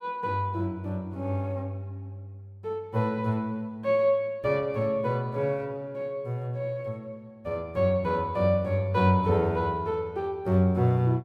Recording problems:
none

